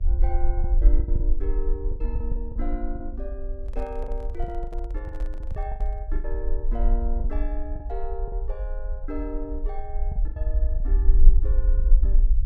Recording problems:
hum; 50 Hz, harmonics up to 600 Hz, SNR 26 dB
low-frequency rumble; below 44 Hz, strongest tone 20 Hz, SNR -10 dB
lost packets; 10% of the sound replaced, filled with the last packet
handling noise; from 3.5 to 6 s; peak -5 dB vs average level

